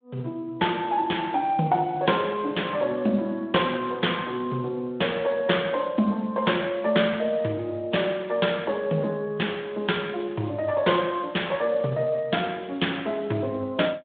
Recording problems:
phone line; 170 Hz to 3.6 kHz, Speex

